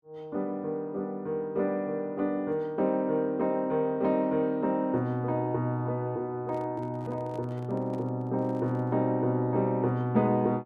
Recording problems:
microphone handling noise; from 6.5 to 9 s; peak -12 dB vs average level

